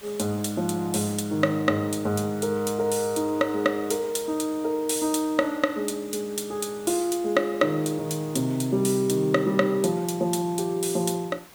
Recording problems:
background hiss; slope -2 dB per octave, SNR 21 dB

